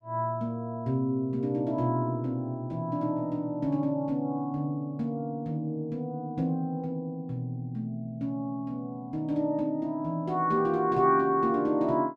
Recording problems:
none

